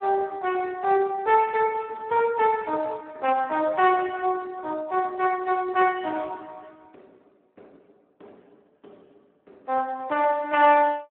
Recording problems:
phone line; 260 Hz to 3.2 kHz, Speex

